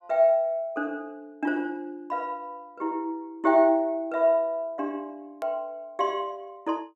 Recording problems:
edit click; at 5.5 s

